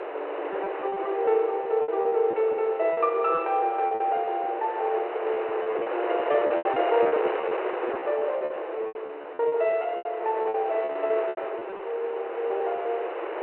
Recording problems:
phone line; 320 Hz to 3.1 kHz, G.726
wind noise; below 1.1 kHz, SNR 6 dB
lost packets; 14% of the sound replaced, filled with repeated pitch periods

